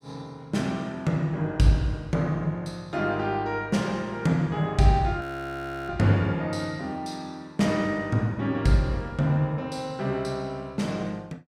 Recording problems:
frozen audio; at 5 s for 0.5 s

